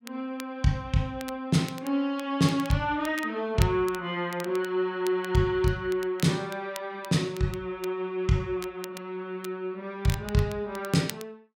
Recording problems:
crackling; vinyl, SNR 17 dB

